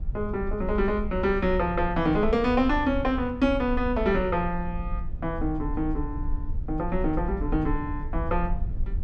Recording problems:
low-frequency rumble; below 62 Hz, SNR 7 dB

